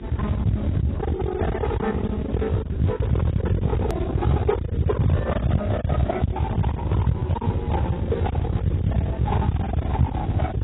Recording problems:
lossy compression; Speex, then AAC, log-spectral distance 2 dB, nothing above 13.1 kHz
distortion; hard clipping, uneven, signal-to-distortion ratio 6 dB
electrical hum; 50 Hz, harmonics up to 400 Hz, SNR 16 dB
rumble; below 200 Hz, SNR -3 dB
click at an edit; at 4 s

